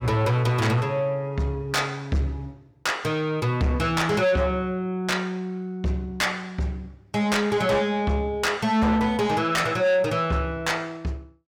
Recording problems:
distortion; soft clipping, signal-to-distortion ratio 8 dB

